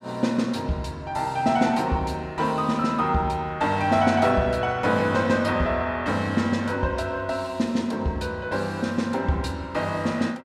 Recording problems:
none

